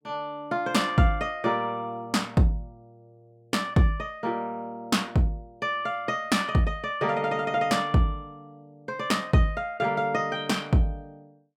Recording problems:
none

